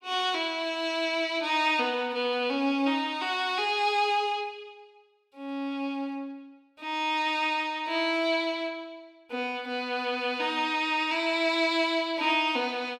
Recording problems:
none

